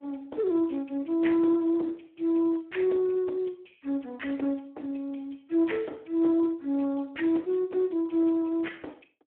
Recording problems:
phone line; 220 Hz to 3.3 kHz, Speex

